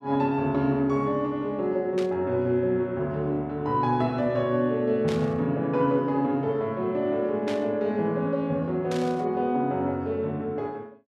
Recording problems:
burst of static; 4 times, first at 2 s; peak -8 dB vs average level

